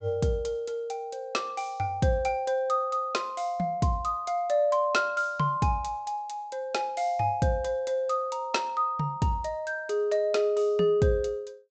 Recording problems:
treble cut off; nothing above 8 kHz

